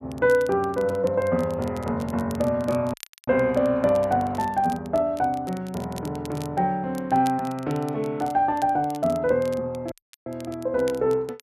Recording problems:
crackling; vinyl, SNR 22 dB
dropout; at 3 s and at 10 s

